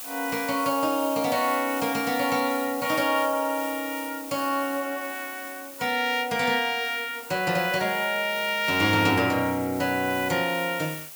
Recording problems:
hiss; slope 0 dB per octave, SNR 12 dB

